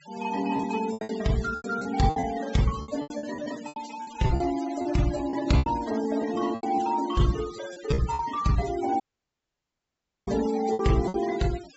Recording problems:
treble missing; nothing above 7.7 kHz
noise reduction artefacts; signal-to-artefact ratio 16 dB
lost packets; 13% of the sound replaced, filled with repeated pitch periods
audio cutting out; at 9 s for 1.5 s

